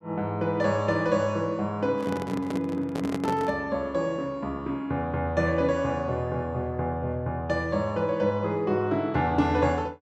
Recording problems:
handling noise; from 2 to 3.5 s; peak +1 dB vs average level

